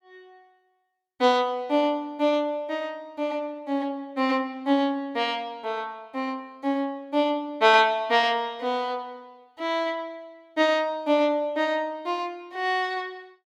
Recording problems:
none

